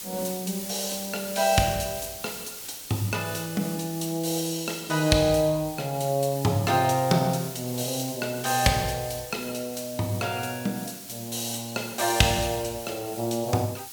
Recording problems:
hiss; SNR 11 dB

